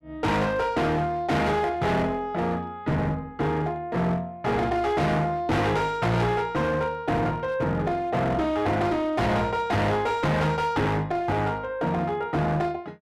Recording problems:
distortion; hard clipping, uneven, signal-to-distortion ratio 7 dB

